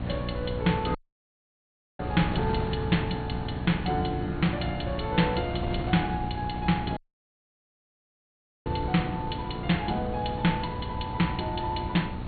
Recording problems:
low-pass filter; nothing above 4.4 kHz
electrical hum; 60 Hz, harmonics up to 1.1 kHz, SNR 8 dB
wind noise; below 290 Hz, SNR 8 dB
dropout; at 1 s for 1 s and at 7 s for 1.5 s

